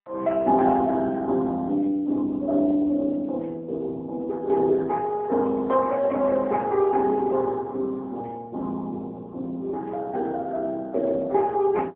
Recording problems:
telephone audio; 240 Hz to 2.5 kHz, AMR-NB

